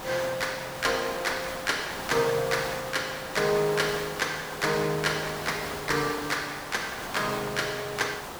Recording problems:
background hiss; SNR 8 dB

